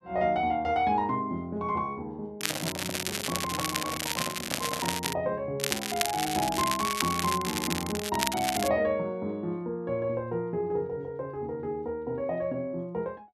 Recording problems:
crackle; from 2.5 to 5 s and from 5.5 to 8.5 s; loose cable, SNR 1 dB
handling noise; from 2.5 to 5 s; peak 0 dB vs average level

